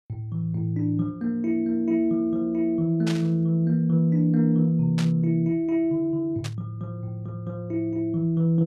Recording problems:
burst of static; at 3 s, at 5 s and at 6.5 s; peak -6 dB vs average level

